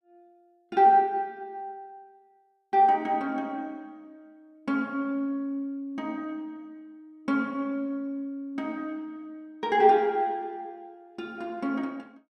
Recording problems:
none

